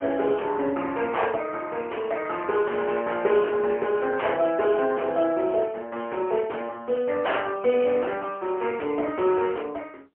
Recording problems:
phone line; 260 Hz to 3.2 kHz, AMR-NB, then MP3
distortion; soft clipping, signal-to-distortion ratio 10 dB

